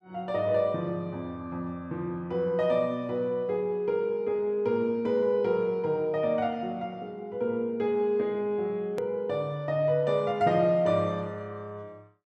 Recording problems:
edit click; at 9 s

